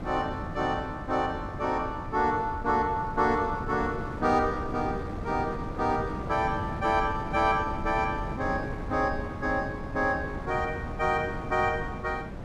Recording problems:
wind noise; below 360 Hz, SNR 8 dB

